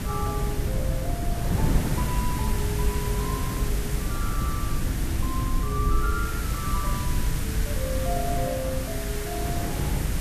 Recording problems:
lossy compression; Vorbis, log-spectral distance 5 dB, nothing above 14.1 kHz
background hiss; SNR 1 dB
rumble; below 90 Hz, SNR -4 dB
wind noise; below 280 Hz, SNR -2 dB

